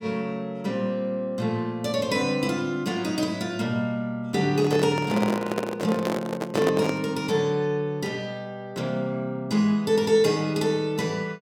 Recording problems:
handling noise; from 4.5 to 7 s; peak +3 dB vs average level

